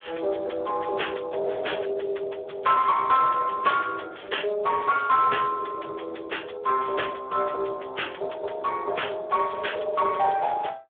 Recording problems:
phone line; 340 Hz to 3.4 kHz, Speex
distortion; soft clipping, signal-to-distortion ratio 10 dB

